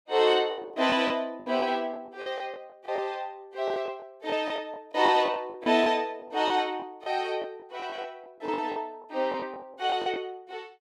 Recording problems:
packet loss; 12% of the sound replaced, filled with the last packet

